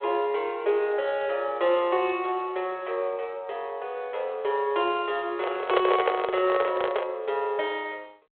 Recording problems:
phone line; 340 Hz to 3.4 kHz, G.726
microphone handling noise; from 5.5 to 7 s; peak +8 dB vs average level

